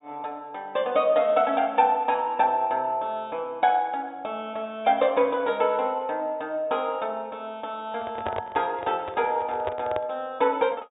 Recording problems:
treble missing; nothing above 4 kHz
microphone handling noise; from 8 to 10 s; peak -2 dB vs average level

